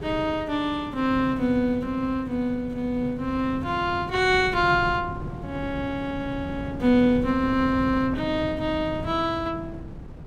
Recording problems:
wind on the microphone; below 250 Hz, SNR 12 dB

